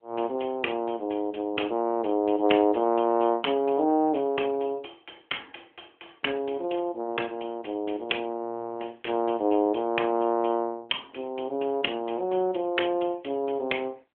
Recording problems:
telephone audio; 240 Hz to 3.3 kHz, AMR-NB

